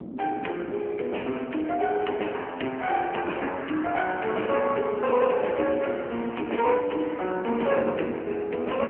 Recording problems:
phone line; 190 Hz to 3.2 kHz, AMR-NB
wind on the microphone; below 350 Hz, SNR 16 dB
crackle; from 1 to 3.5 s, from 4 to 5 s and from 5.5 to 7.5 s; loose cable, SNR 26 dB

